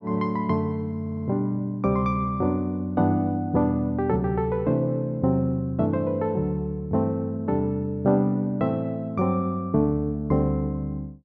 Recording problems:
stutter; at 1 s

